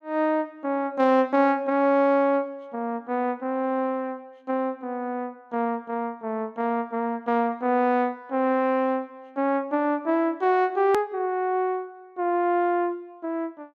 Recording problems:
click at an edit; at 11 s

